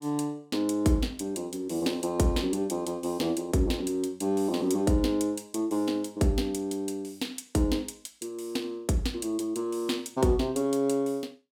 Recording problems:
none

